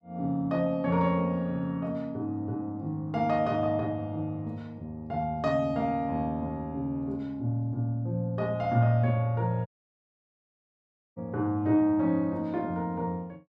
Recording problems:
dropout; at 9.5 s for 1.5 s

